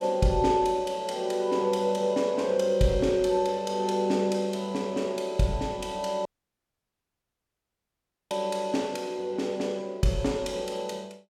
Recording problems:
dropout; at 6.5 s for 2 s

